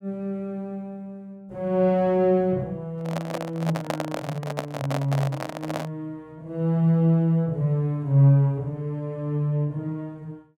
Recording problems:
microphone handling noise; from 3 to 6 s; peak +1 dB vs average level

